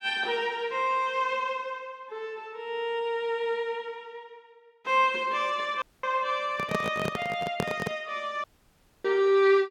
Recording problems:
audio cutting out; at 6 s and at 8.5 s for 0.5 s
microphone handling noise; from 6.5 to 8 s; peak +3 dB vs average level

